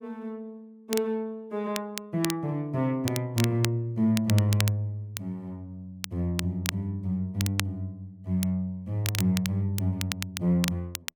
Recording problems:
crackling; vinyl, SNR 7 dB

